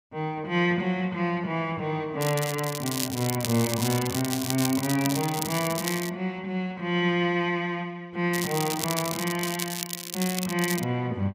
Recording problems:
crackle; from 2 to 6 s and from 8.5 to 11 s; loose cable, SNR 5 dB

